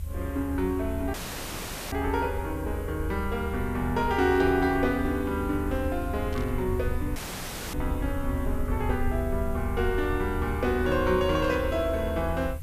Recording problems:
hiss; slope -1 dB per octave, SNR 23 dB
rumble; below 78 Hz, SNR 6 dB
dropout; at 1 s for 1 s and at 7 s for 0.5 s
static burst; at 4.5 s, at 6.5 s and at 11 s; peak -12 dB vs average level

